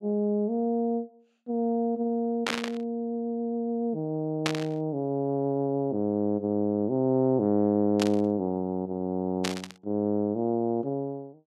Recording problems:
static burst; 4 times, first at 2.5 s; peak +4 dB vs average level

